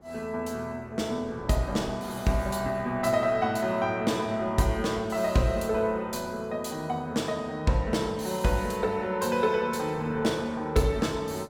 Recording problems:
wind noise; below 640 Hz, SNR 22 dB

